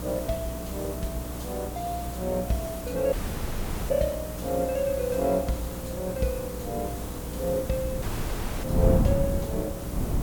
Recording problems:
hum; 60 Hz, harmonics up to 300 Hz, SNR 9 dB
background hiss; slope -6 dB per octave, SNR 8 dB
wind on the microphone; below 220 Hz, SNR 2 dB
dropout; at 3 s for 1 s and at 8 s for 0.5 s

